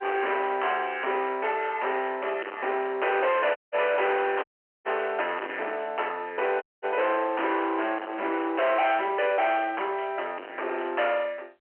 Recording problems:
telephone audio; 300 Hz to 3.2 kHz, G.711
distorted audio; soft clipping, signal-to-distortion ratio 8 dB
dropout; at 3.5 s, at 4.5 s and at 6.5 s

